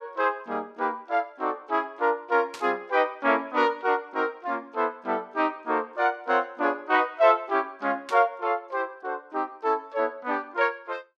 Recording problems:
burst of static; at 2.5 s and at 8 s; peak -8 dB vs average level

